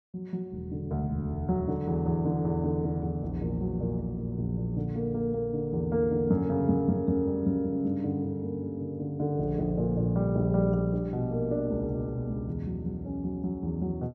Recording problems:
none

